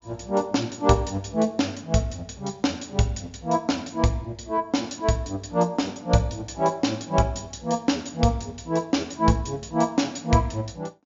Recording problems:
low-pass filter; nothing above 7.2 kHz

